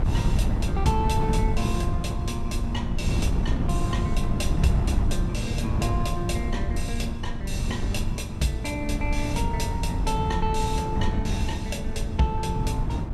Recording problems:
wind noise; below 130 Hz, SNR -2 dB

